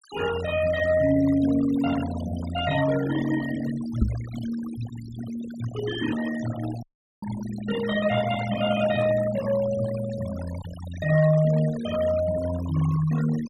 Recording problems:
noise reduction artefacts; signal-to-artefact ratio 14 dB
microphone thump; at 4 s; peak +6 dB vs average level
dropout; at 7 s

